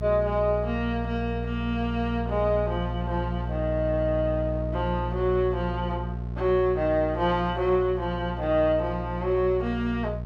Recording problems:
mains hum; 60 Hz, harmonics up to 660 Hz, SNR 6 dB

